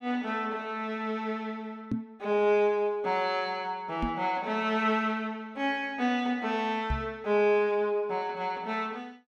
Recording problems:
microphone bump; at 2 s, at 4 s and at 7 s; peak +2 dB vs average level

